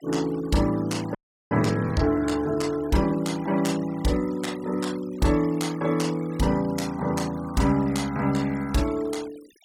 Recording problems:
noise reduction artefacts; signal-to-artefact ratio 20 dB
frozen audio; at 1 s

